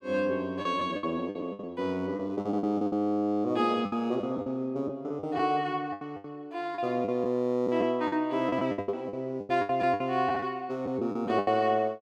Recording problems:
lost packets; 13% of the sound replaced, filled with the last packet

